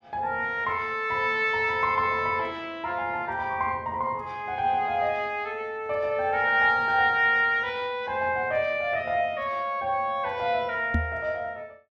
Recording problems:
knock on the microphone; at 11 s; peak +3 dB vs average level

